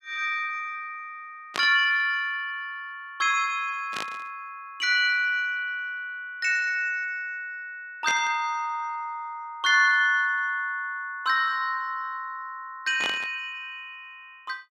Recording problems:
static burst; 4 times, first at 1.5 s; peak -1 dB vs average level

